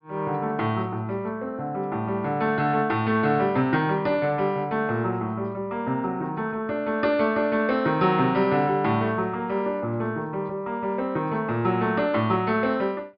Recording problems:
treble cut off; nothing above 5.5 kHz

